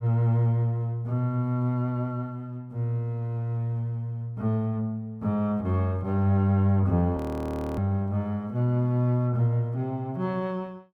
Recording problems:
audio freezing; at 7 s for 0.5 s

